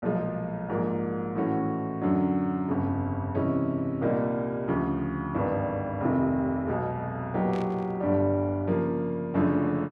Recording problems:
static burst; at 7.5 s; peak -13 dB vs average level

